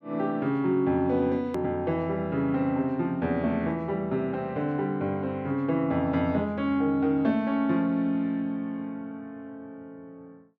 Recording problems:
edit click; at 1.5 s

